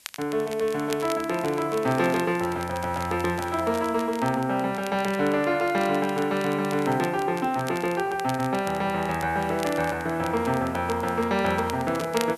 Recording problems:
background hiss; SNR 26 dB
crackling; vinyl, SNR 17 dB

